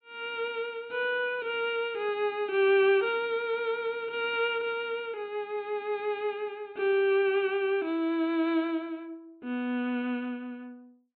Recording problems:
treble cut off; nothing above 4 kHz

